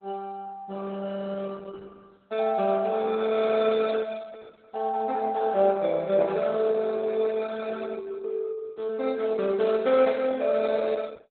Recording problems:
lossy compression; Opus, log-spectral distance 3 dB, nothing above 3.8 kHz

